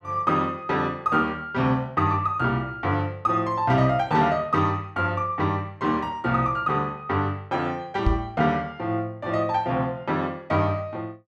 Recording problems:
microphone thump; at 8 s; peak +5 dB vs average level

